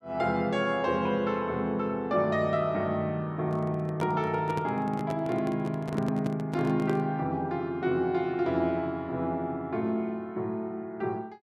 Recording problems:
handling noise; from 3.5 to 7 s; peak -3 dB vs average level

